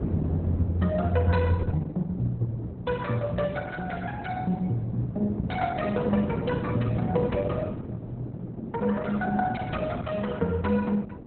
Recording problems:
lossy compression; MP2, then Opus, log-spectral distance 3 dB, nothing above 4 kHz
wind on the microphone; below 310 Hz, SNR 6 dB

